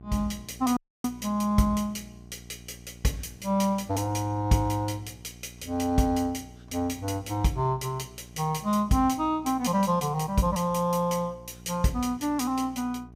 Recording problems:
mains hum; 60 Hz, harmonics up to 780 Hz, SNR 21 dB
dropout; at 1 s

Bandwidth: 15.5 kHz